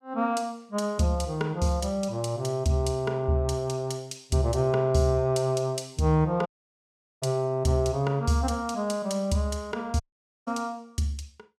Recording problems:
audio cutting out; at 6.5 s for 1 s and at 10 s

